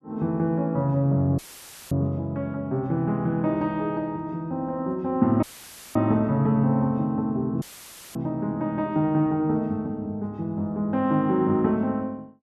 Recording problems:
audio cutting out; at 1.5 s for 0.5 s, at 5.5 s for 0.5 s and at 7.5 s for 0.5 s; filled with static

